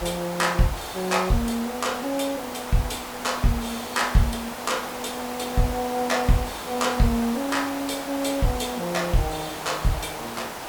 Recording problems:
background hiss; SNR 7 dB

